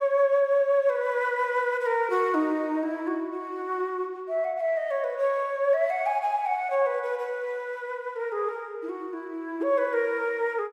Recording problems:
none

